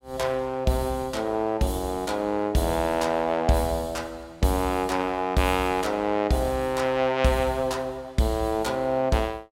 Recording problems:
none

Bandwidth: 16 kHz